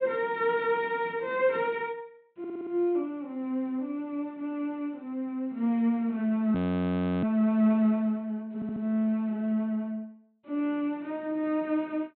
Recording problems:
treble missing; nothing above 4 kHz
audio stuttering; at 2.5 s and at 8.5 s
audio freezing; at 6.5 s for 0.5 s

